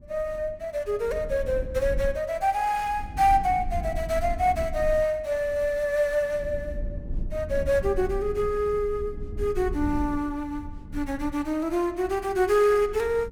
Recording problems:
low-frequency rumble; below 78 Hz, SNR 11 dB

